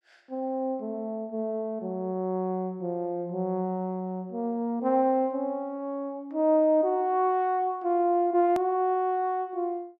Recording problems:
edit click; at 8.5 s

